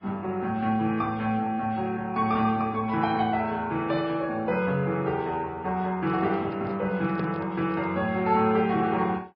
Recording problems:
treble cut off; nothing above 4.2 kHz
lossy compression; Vorbis, log-spectral distance 2 dB
handling noise; from 6 to 8 s; peak -7 dB vs average level

